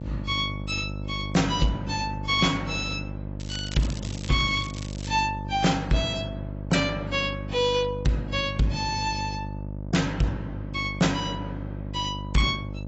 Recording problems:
codec artefacts; AAC, log-spectral distance 4 dB, nothing above 7.6 kHz
distortion; soft clipping, signal-to-distortion ratio 10 dB
hum; 50 Hz, harmonics up to 900 Hz, SNR 8 dB
crackle; from 3.5 to 5 s; loose cable, SNR 14 dB

